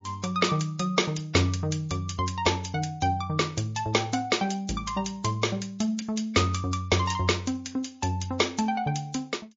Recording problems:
lossy compression; MP3, log-spectral distance 4 dB

